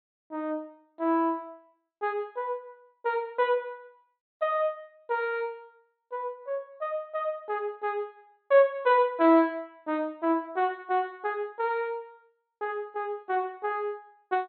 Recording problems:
treble missing; nothing above 4.3 kHz

